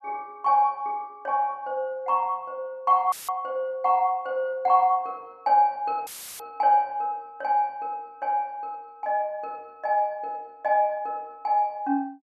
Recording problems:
dropout; at 3 s and at 6 s; filled with static

